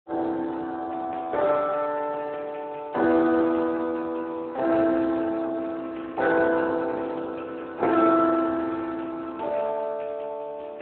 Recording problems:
telephone audio; 260 Hz to 3.3 kHz, Speex

